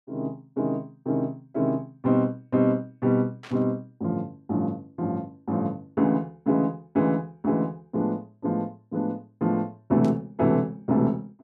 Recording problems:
static burst; at 3.5 s and at 10 s; peak -13 dB vs average level

